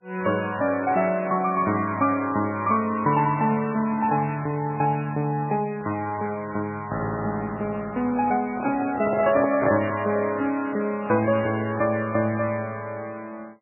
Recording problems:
lossy codec; MP3, log-spectral distance 3 dB, nothing above 2.4 kHz
microphone handling noise; from 8.5 to 10 s; peak +1 dB vs average level

